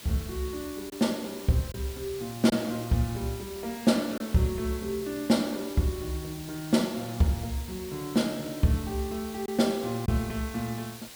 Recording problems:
hiss; slope 0 dB per octave, SNR 14 dB
lost packets; 1.1% of the sound replaced, filled with silence

